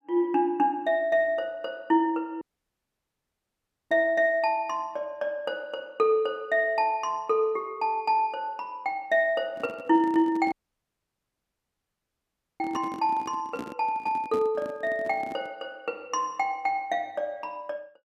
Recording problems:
dropout; at 2.5 s for 1.5 s and at 11 s for 2 s
microphone handling noise; from 9.5 to 16 s; peak -4 dB vs average level

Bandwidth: 14.5 kHz